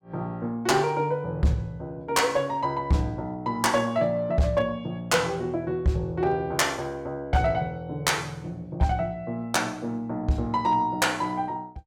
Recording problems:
distortion; hard clipping, signal-to-distortion ratio 12 dB

